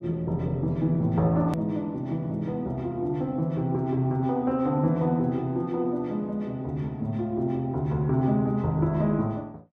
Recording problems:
hard cut with a click; at 1.5 s

